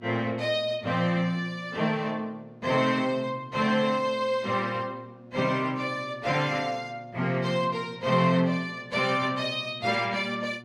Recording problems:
hum; 60 Hz, harmonics up to 1.4 kHz, SNR 22 dB

